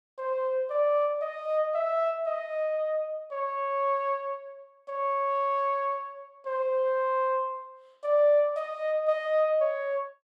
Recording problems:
none

